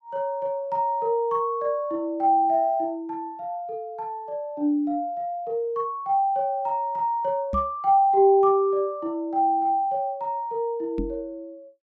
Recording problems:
knock on the microphone; at 7.5 s and at 11 s; peak -2 dB vs average level

